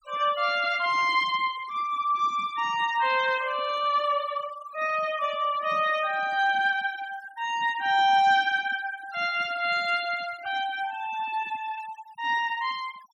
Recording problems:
denoising artefacts; signal-to-artefact ratio 19 dB

